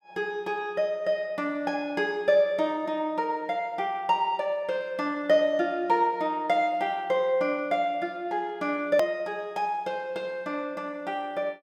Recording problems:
edit click; at 9 s

